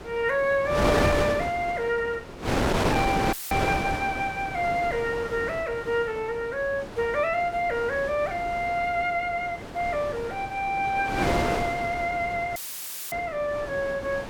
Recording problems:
electrical hum; 50 Hz, harmonics up to 550 Hz, SNR 24 dB
wind on the microphone; below 1.3 kHz, SNR 4 dB
dropout; at 3.5 s and at 13 s for 0.5 s; filled with static

